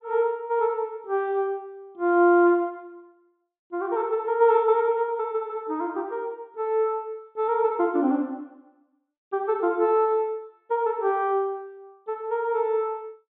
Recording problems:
treble cut off; nothing above 4 kHz

